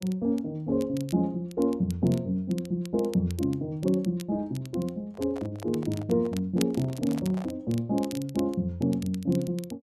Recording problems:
crackling; vinyl, SNR 19 dB
microphone handling noise; from 5 to 7.5 s; peak -10 dB vs average level

